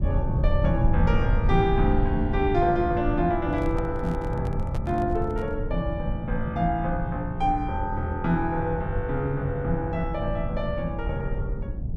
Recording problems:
rumble; below 110 Hz, SNR 3 dB
handling noise; from 3.5 to 5.5 s; peak -7 dB vs average level

